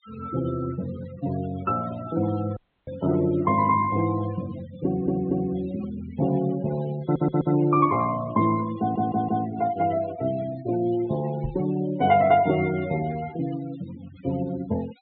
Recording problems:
low-pass filter; nothing above 4.1 kHz
denoising artefacts; signal-to-artefact ratio 17 dB
audio cutting out; at 2.5 s
stutter; at 5 s, at 7 s and at 9 s
knock on the microphone; at 11 s; peak -3 dB vs average level

